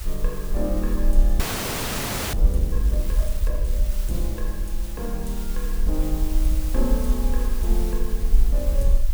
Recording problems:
hiss; slope 0 dB per octave, SNR 8 dB
low-frequency rumble; below 46 Hz, SNR -6 dB
frozen audio; at 1.5 s for 1 s

